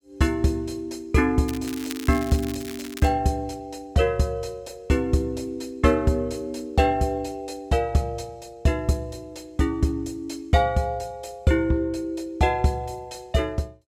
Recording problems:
crackle; from 1.5 to 3 s; loose cable, SNR 14 dB

